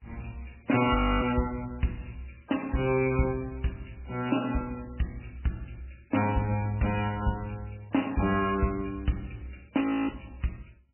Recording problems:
lossy compression; MP3, log-spectral distance 7 dB, nothing above 2.7 kHz
audio freezing; at 1 s and at 10 s

